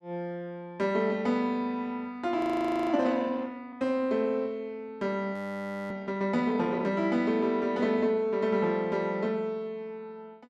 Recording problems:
audio freezing; at 2.5 s for 0.5 s and at 5.5 s for 0.5 s

